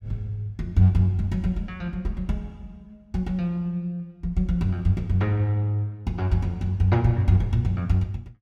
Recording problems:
none

